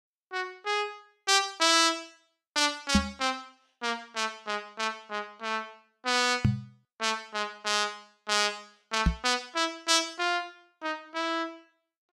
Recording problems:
microphone bump; at 3 s, at 6.5 s and at 9 s; peak +8 dB vs average level

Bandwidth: 14.5 kHz